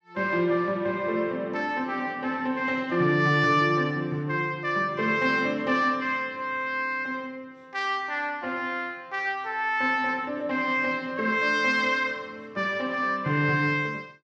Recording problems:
none

